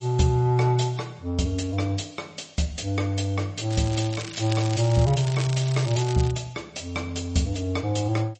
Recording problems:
lossy compression; MP3, log-spectral distance 4 dB, nothing above 7.8 kHz
crackling; from 3.5 to 6.5 s; loose cable, SNR 12 dB

